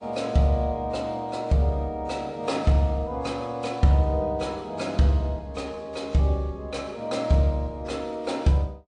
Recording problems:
lossy compression; MP3, then AAC, log-spectral distance 2 dB, nothing above 9.8 kHz

